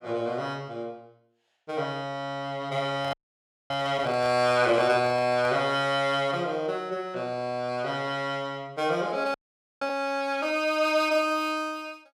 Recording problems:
handling noise; from 3 to 5.5 s; peak -10 dB vs average level
audio freezing; at 3 s for 0.5 s and at 9.5 s

